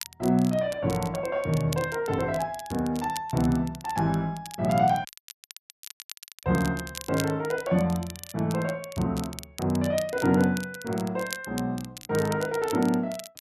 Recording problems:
crackling; vinyl, SNR 15 dB
dropout; at 5 s for 1.5 s

